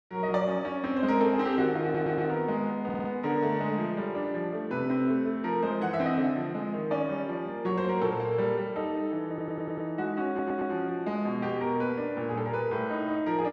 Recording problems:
stutter; 4 times, first at 2 s

